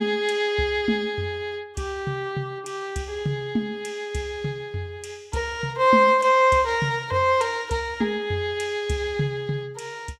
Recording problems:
none

